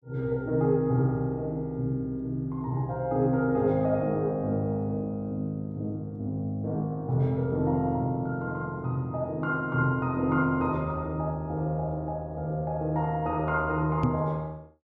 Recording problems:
microphone bump; at 14 s; peak +6 dB vs average level

